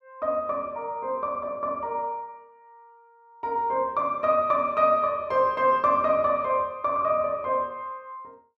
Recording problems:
none

